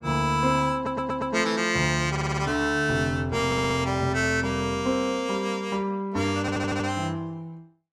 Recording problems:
stutter; 4 times, first at 1 s

